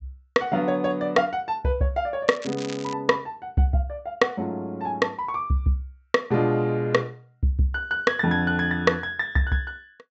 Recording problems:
treble missing; nothing above 8 kHz
crackling; at 2.5 s; loose cable, SNR 16 dB

